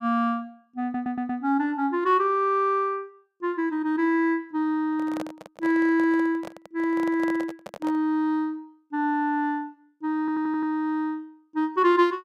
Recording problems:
stutter; at 1 s and at 10 s
microphone handling noise; from 5 to 8 s; peak -6 dB vs average level

